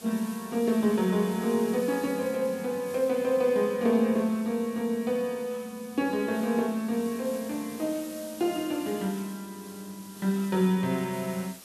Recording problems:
hiss; SNR 18 dB

